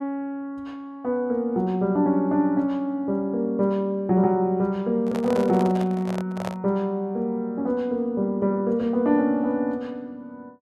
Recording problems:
microphone handling noise; from 5 to 6.5 s; peak -4 dB vs average level

